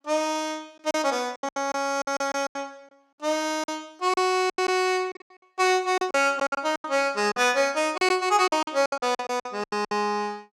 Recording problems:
packet loss; 14% of the sound replaced, filled with silence

